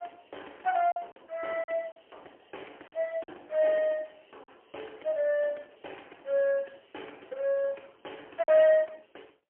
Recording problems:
telephone audio; 300 Hz to 3.2 kHz, AMR-NB, then MP3
lost packets; 3% of the sound replaced, filled with silence

